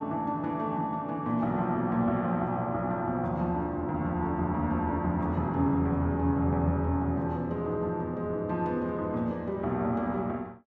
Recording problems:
none

